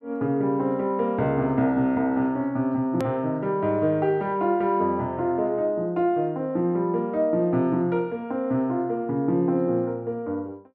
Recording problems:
click at an edit; at 3 s

